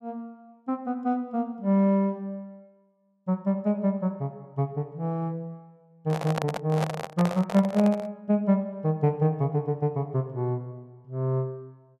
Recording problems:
microphone handling noise; from 6 to 8 s; peak +1 dB vs average level

